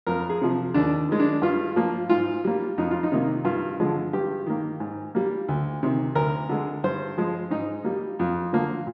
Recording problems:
none

